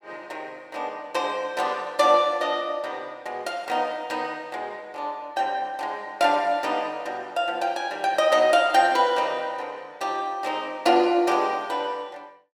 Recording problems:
none

